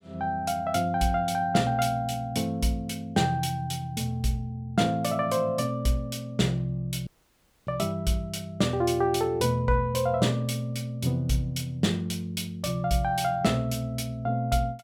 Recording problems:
dropout; at 7 s for 0.5 s

